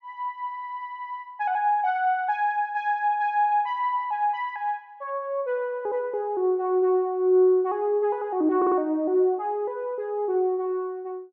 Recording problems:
stutter; at 8.5 s

